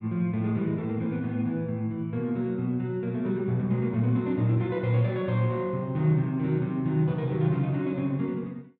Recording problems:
none

